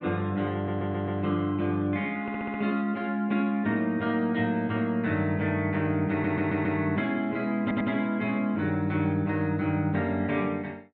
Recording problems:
stutter; 4 times, first at 0.5 s

